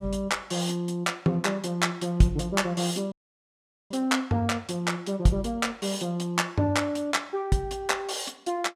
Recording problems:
audio cutting out; at 3 s for 1 s

